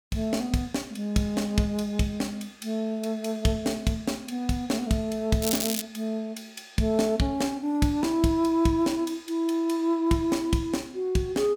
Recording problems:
crackle; at 5.5 s; loose cable, SNR 2 dB

